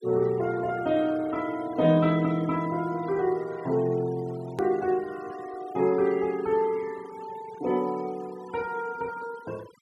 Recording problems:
denoising artefacts; signal-to-artefact ratio 21 dB
hard cut with a click; at 4.5 s

